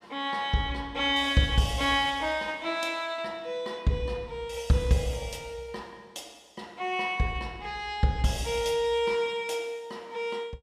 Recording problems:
none

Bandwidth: 14.5 kHz